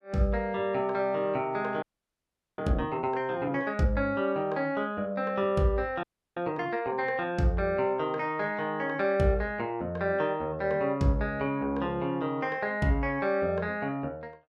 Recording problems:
frozen audio; at 2 s for 1 s and at 6 s

